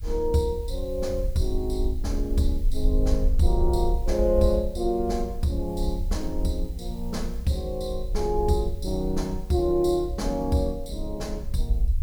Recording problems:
hiss; slope 0 dB per octave, SNR 26 dB
low-frequency rumble; below 56 Hz, SNR 4 dB

